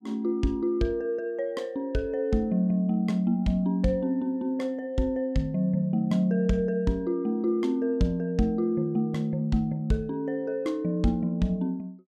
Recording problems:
none

